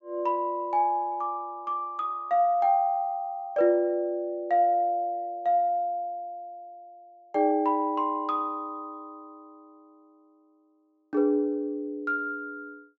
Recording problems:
treble missing; nothing above 8 kHz

